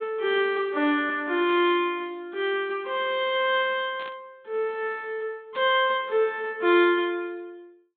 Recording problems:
low-pass filter; nothing above 4 kHz
static burst; at 1.5 s, at 4 s and at 5.5 s; peak -13 dB vs average level

